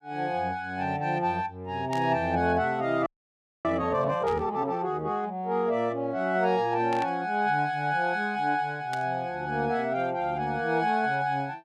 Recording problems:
static burst; 4 times, first at 2 s; peak -8 dB vs average level
audio freezing; at 3 s for 0.5 s

